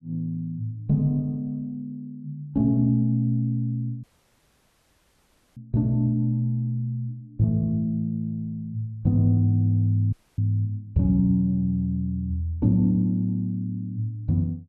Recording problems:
dropout; at 4 s for 1.5 s and at 10 s

